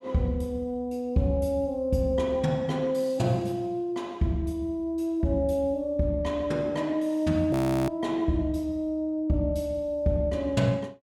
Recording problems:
frozen audio; at 7.5 s

